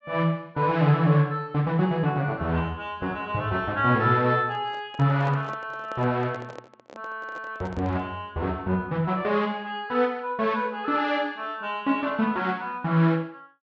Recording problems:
treble missing; nothing above 8 kHz
handling noise; from 4.5 to 8 s; peak -10 dB vs average level

